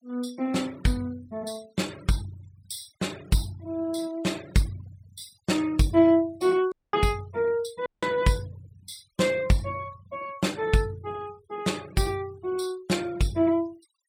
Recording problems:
denoising artefacts; signal-to-artefact ratio 23 dB
dropout; at 6.5 s and at 8 s

